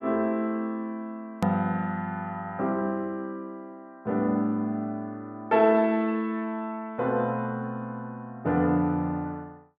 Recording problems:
hard cut with a click; at 1.5 s

